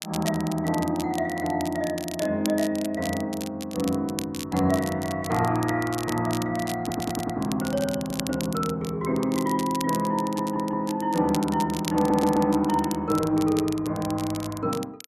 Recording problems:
crackle; vinyl, SNR 13 dB
stutter; 4 times, first at 7 s

